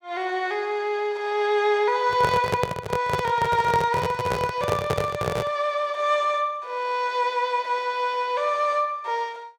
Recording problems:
microphone handling noise; from 2 to 5.5 s; peak +3 dB vs average level

